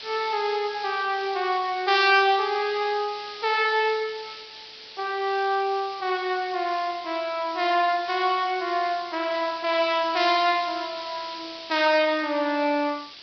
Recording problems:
treble cut off; nothing above 5.5 kHz
hiss; SNR 14 dB

